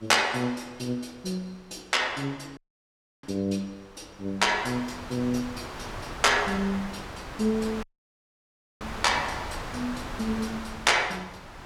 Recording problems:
wind on the microphone; below 1.8 kHz, SNR 10 dB
audio cutting out; at 2.5 s for 0.5 s and at 8 s for 1 s

